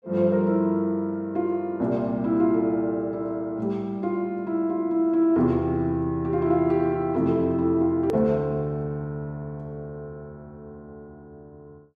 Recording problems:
click at an edit; at 8 s

